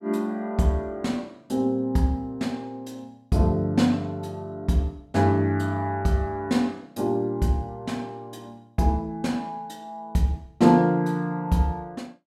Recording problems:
none

